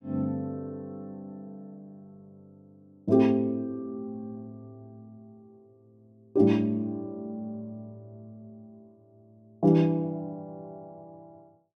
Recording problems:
none

